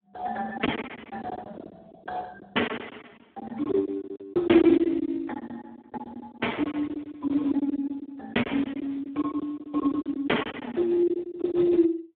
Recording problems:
phone line; 240 Hz to 3.4 kHz, Speex
lost packets; 16% of the sound replaced, filled with silence

